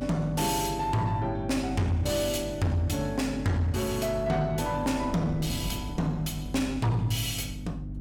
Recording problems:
distorted audio; soft clipping, signal-to-distortion ratio 11 dB
hum; 50 Hz, harmonics up to 300 Hz, SNR 10 dB
wind on the microphone; below 240 Hz, SNR 16 dB

